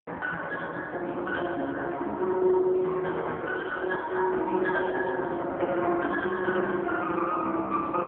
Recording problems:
phone line; 260 Hz to 3 kHz, AMR-NB

